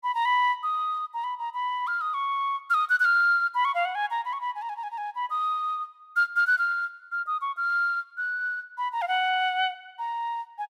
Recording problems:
none

